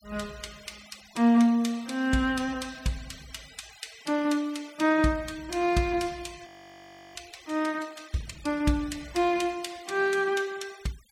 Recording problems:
noise reduction artefacts; signal-to-artefact ratio 23 dB
frozen audio; at 6.5 s for 0.5 s

